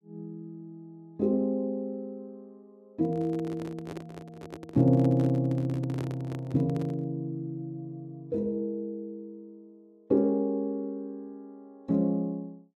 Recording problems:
handling noise; from 3 to 7 s; peak -6 dB vs average level

